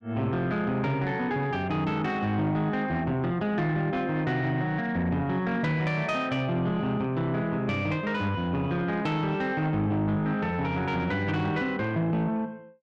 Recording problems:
distorted audio; soft clipping, signal-to-distortion ratio 12 dB

